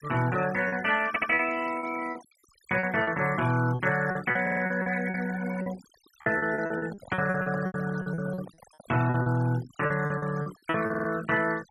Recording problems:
noise reduction artefacts; signal-to-artefact ratio 16 dB
packet loss; 14% of the sound replaced, filled with repeated pitch periods
stutter; at 1 s, at 4.5 s and at 11 s
handling noise; from 6.5 to 9.5 s; peak -9 dB vs average level

